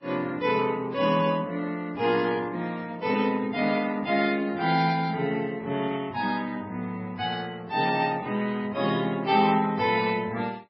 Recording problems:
lossy compression; MP3, then Vorbis, log-spectral distance 3 dB, nothing above 4.9 kHz

